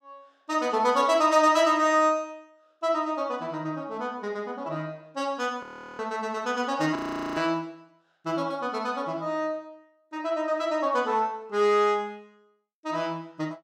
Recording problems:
frozen audio; at 5.5 s and at 7 s

